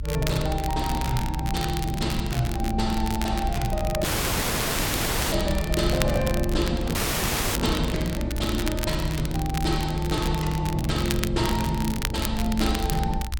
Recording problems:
hum; 50 Hz, harmonics up to 600 Hz, SNR 20 dB
low-frequency rumble; below 64 Hz, SNR 5 dB
crackling; vinyl, SNR 8 dB
dropout; at 4 s for 1.5 s and at 7 s for 0.5 s

